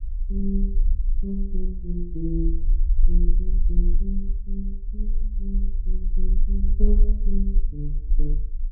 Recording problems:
low-frequency rumble; below 38 Hz, strongest tone 22 Hz, SNR -7 dB

